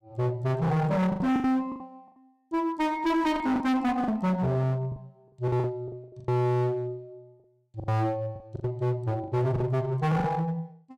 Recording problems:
distortion; hard clipping, uneven, signal-to-distortion ratio 6 dB
lost packets; 11% of the sound replaced, filled with the last packet

